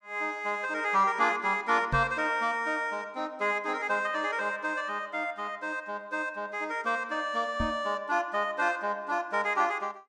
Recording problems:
knock on the microphone; at 2 s and at 7.5 s; peak 0 dB vs average level

